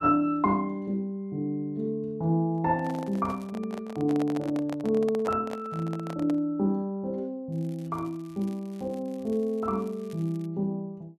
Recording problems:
microphone handling noise; from 2.5 to 6.5 s; peak -2 dB vs average level
crackle; at 3 s and from 7.5 to 10 s; loose cable, SNR 29 dB

